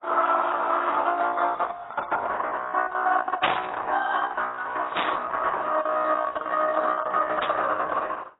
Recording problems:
codec artefacts; Opus, then AAC, log-spectral distance 5 dB, nothing above 3.7 kHz
static burst; at 3.5 s, at 5 s and at 7.5 s; peak +4 dB vs average level

